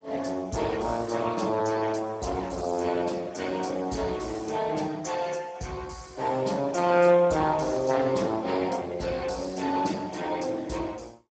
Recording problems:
lossy codec; Speex, log-spectral distance 5 dB, nothing above 7.6 kHz

